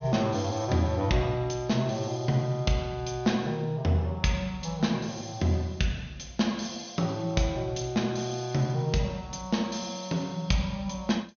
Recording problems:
treble missing; nothing above 6.6 kHz

